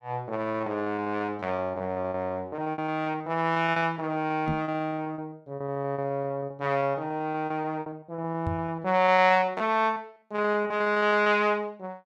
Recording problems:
packet loss; 17% of the sound replaced, filled with repeated pitch periods
microphone bump; at 4.5 s and at 8.5 s; peak -1 dB vs average level

